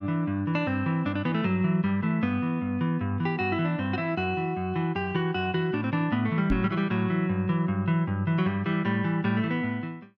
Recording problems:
microphone bump; at 6.5 s; peak +3 dB vs average level

